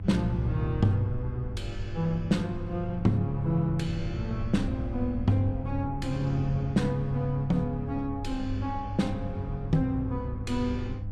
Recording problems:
electrical hum; 50 Hz, harmonics up to 500 Hz, SNR 10 dB
rumble; below 80 Hz, SNR 11 dB

